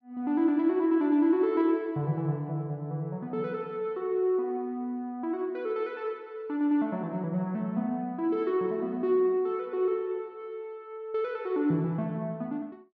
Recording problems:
none

